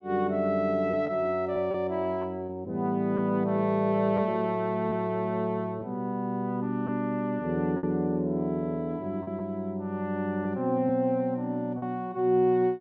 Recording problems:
lost packets; 3% of the sound replaced, filled with repeated pitch periods

